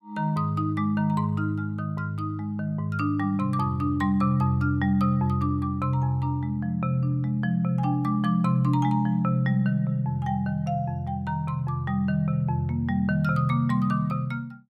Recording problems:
none

